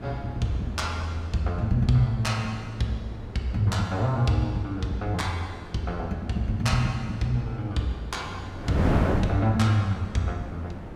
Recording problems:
wind noise; below 460 Hz, SNR 8 dB

